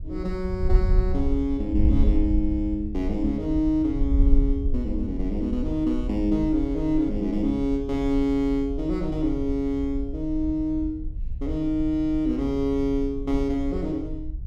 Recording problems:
wind noise; below 60 Hz, SNR 5 dB

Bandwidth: 13.5 kHz